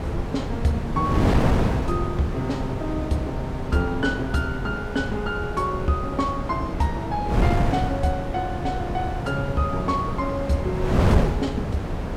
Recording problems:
wind on the microphone; below 420 Hz, SNR 0 dB

